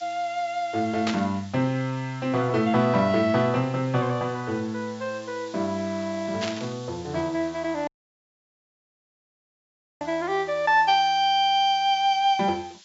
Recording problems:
low-pass filter; nothing above 8 kHz
hiss; slope +6 dB per octave, SNR 23 dB
static burst; at 1 s and at 6.5 s; peak -1 dB vs average level
audio cutting out; at 8 s for 2 s

